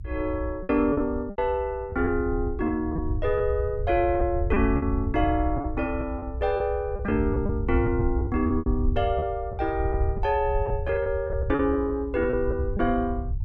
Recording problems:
low-frequency rumble; below 88 Hz, SNR 5 dB
packet loss; 8% of the sound replaced, filled with repeated pitch periods

